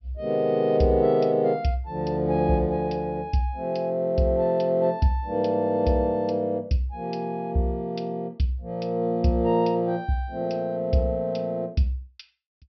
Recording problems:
low-pass filter; nothing above 5.5 kHz

